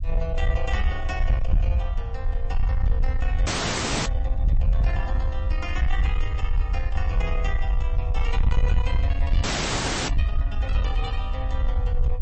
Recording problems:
codec artefacts; MP3, log-spectral distance 2 dB, nothing above 7.6 kHz
distorted audio; soft clipping, signal-to-distortion ratio 11 dB
rumble; below 68 Hz, SNR -8 dB
frozen audio; at 3.5 s for 0.5 s and at 9.5 s for 0.5 s

